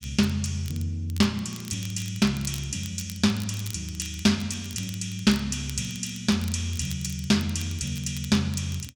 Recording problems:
crackling; vinyl, SNR 17 dB

